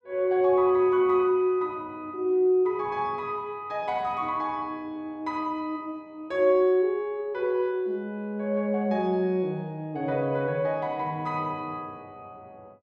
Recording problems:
none

